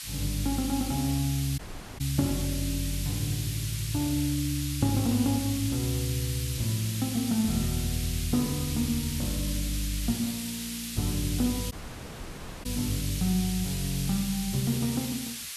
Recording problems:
background hiss; SNR 6 dB
dropout; at 1.5 s and at 12 s for 1 s

